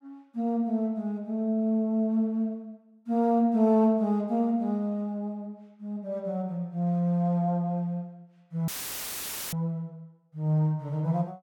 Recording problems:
audio cutting out; at 8.5 s for 1 s; filled with static

